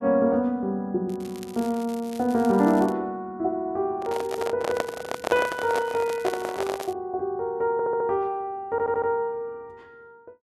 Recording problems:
crackling; from 1 to 3 s, at 4 s and from 4.5 to 7 s; loose cable, SNR 20 dB
handling noise; from 4 to 7 s; peak +3 dB vs average level
audio stuttering; at 7.5 s and at 8.5 s

